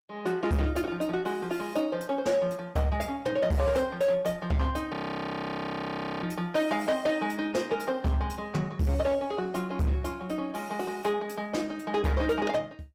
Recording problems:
lossy compression; Opus, log-spectral distance 3 dB
distortion; hard clipping, signal-to-distortion ratio 11 dB
frozen audio; at 5 s for 1.5 s

